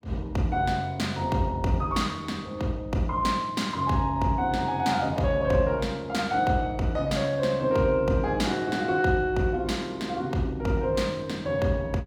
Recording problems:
none

